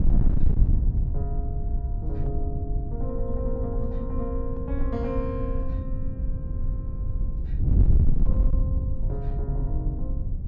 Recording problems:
low-pass filter; nothing above 8 kHz
distortion; hard clipping, uneven, signal-to-distortion ratio 11 dB
wind on the microphone; below 78 Hz, SNR -8 dB

